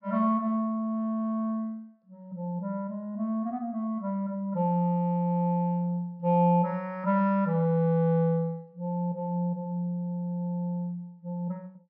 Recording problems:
treble cut off; nothing above 5.5 kHz

